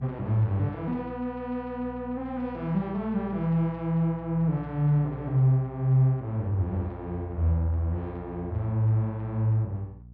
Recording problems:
hum; 60 Hz, harmonics up to 300 Hz, SNR 18 dB

